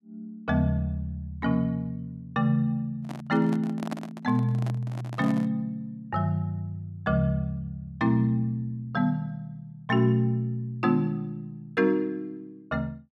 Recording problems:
handling noise; from 3 to 5.5 s; peak -3 dB vs average level

